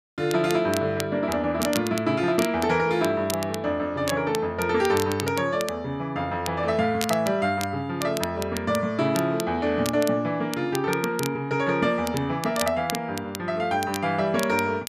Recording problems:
crackle; vinyl, SNR 12 dB

